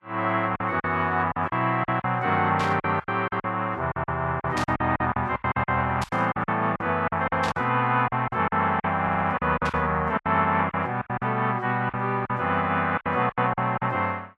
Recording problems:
codec artefacts; Vorbis, log-spectral distance 2 dB
lost packets; 15% of the sound replaced, filled with silence
burst of static; 5 times, first at 2.5 s; peak -4 dB vs average level
stutter; at 9 s

